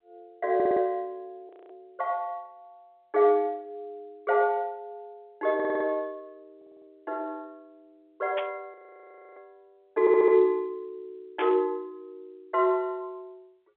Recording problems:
phone line; 320 Hz to 3.7 kHz, G.711
audio stuttering; 4 times, first at 0.5 s
frozen audio; at 1.5 s and at 8.5 s for 0.5 s
static burst; at 8.5 s and at 11 s; peak -4 dB vs average level

